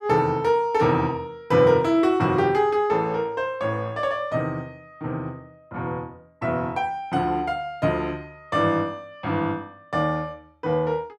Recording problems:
none

